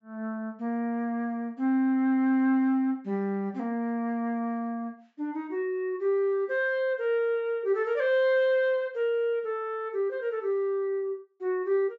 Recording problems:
low-pass filter; nothing above 8 kHz

